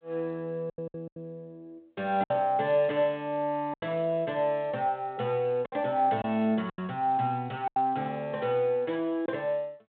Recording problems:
telephone audio; 170 Hz to 3.9 kHz, G.726
packet loss; 6% of the sound replaced, filled with silence

